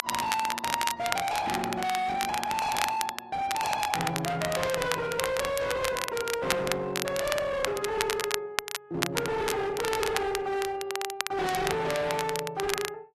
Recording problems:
codec artefacts; AAC, log-spectral distance 2 dB, nothing above 13.1 kHz
distortion; hard clipping, signal-to-distortion ratio 6 dB
crackle; vinyl, SNR 4 dB

